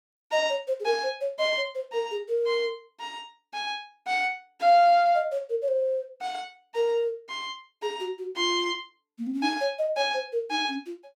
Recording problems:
none

